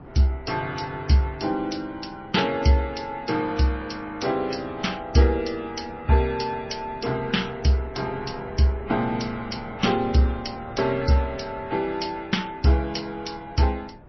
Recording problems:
codec artefacts; MP3, then MP3, log-spectral distance 3 dB, nothing above 5.8 kHz
wind noise; below 530 Hz, SNR 19 dB

